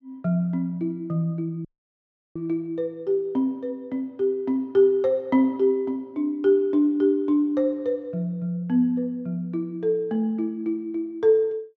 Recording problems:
dropout; at 1.5 s for 0.5 s

